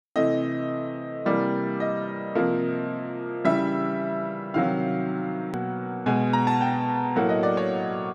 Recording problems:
edit click; at 5.5 s

